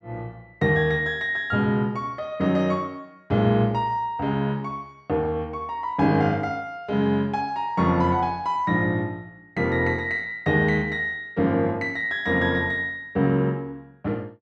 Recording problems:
none

